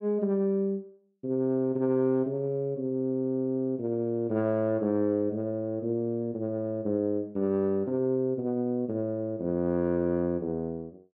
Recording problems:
none

